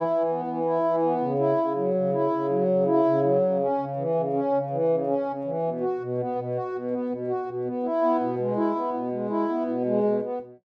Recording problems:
none

